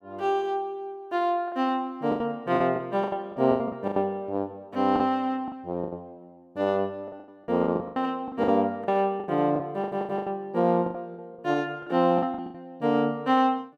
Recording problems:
packet loss; 13% of the sound replaced, filled with the last packet
audio stuttering; at 10 s

